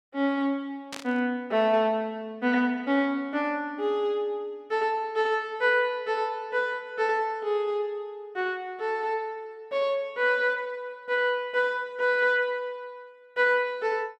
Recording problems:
burst of static; at 1 s; peak -5 dB vs average level

